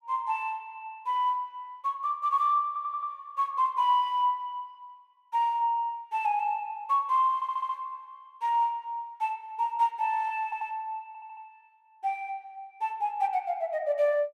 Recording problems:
audio stuttering; 4 times, first at 2.5 s

